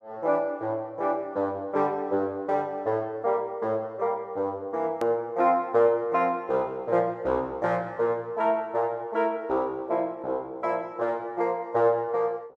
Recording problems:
hard cut with a click; at 5 s

